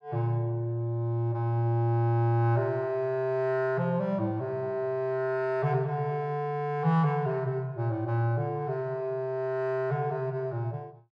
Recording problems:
none

